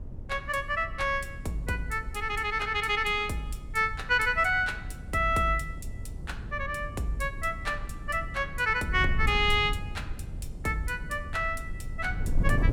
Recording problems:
wind noise; below 90 Hz, SNR 9 dB

